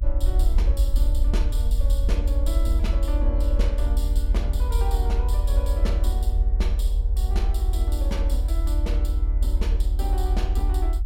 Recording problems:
rumble; below 56 Hz, strongest tone 40 Hz, SNR -11 dB

